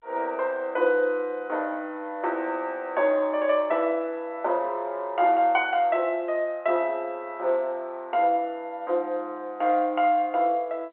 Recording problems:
phone line; 340 Hz to 3.8 kHz, G.711

